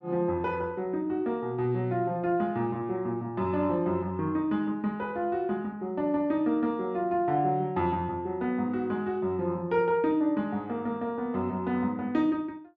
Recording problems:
none

